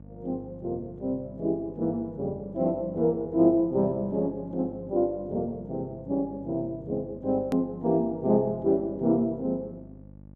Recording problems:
hum; 50 Hz, harmonics up to 850 Hz, SNR 20 dB
edit click; at 7.5 s

